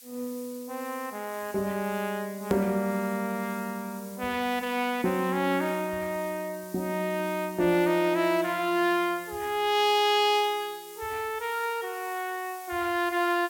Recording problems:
hiss; SNR 18 dB
edit click; at 2.5 s

